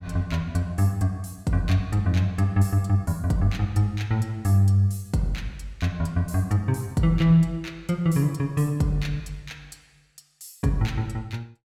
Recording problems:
none

